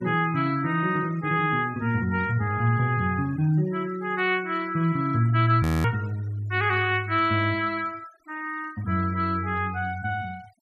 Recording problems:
noise reduction artefacts; signal-to-artefact ratio 23 dB
audio freezing; at 5.5 s

